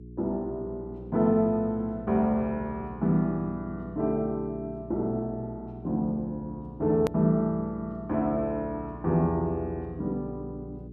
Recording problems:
electrical hum; 60 Hz, harmonics up to 420 Hz, SNR 15 dB
edit click; at 7 s

